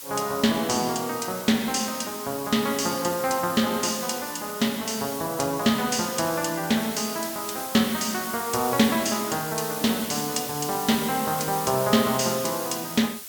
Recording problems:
hiss; slope +2 dB per octave, SNR 8 dB

